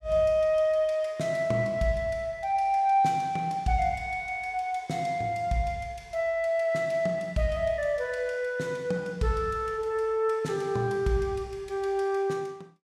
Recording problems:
none

